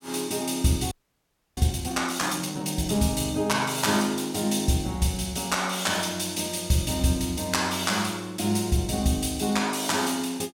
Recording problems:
audio freezing; at 1 s for 0.5 s

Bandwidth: 17 kHz